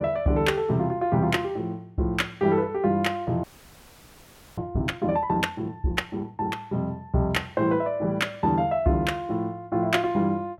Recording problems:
audio freezing; at 3.5 s for 1 s

